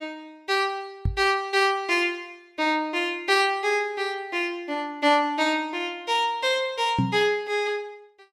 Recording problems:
microphone bump; at 1 s and at 7 s; peak +4 dB vs average level

